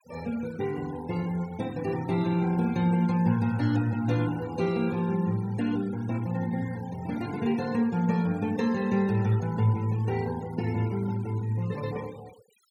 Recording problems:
denoising artefacts; signal-to-artefact ratio 20 dB

